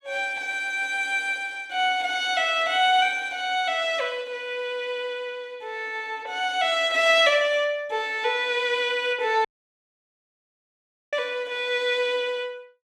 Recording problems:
audio cutting out; at 9.5 s for 1.5 s

